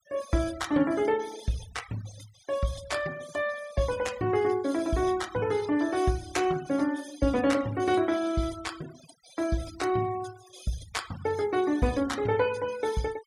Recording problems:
noise reduction artefacts; signal-to-artefact ratio 18 dB

